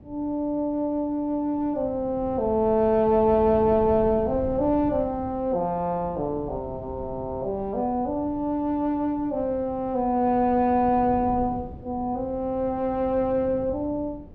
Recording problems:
wind on the microphone; below 260 Hz, SNR 16 dB

